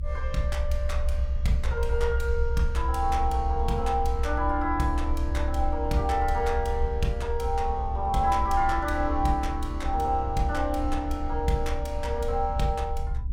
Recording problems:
rumble; below 66 Hz, strongest tone 22 Hz, SNR 3 dB

